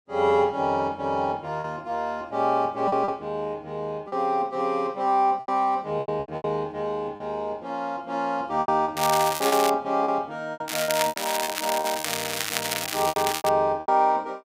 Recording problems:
lost packets; 9% of the sound replaced, filled with repeated pitch periods
crackle; at 9 s and from 11 to 13 s; loose cable, SNR 3 dB

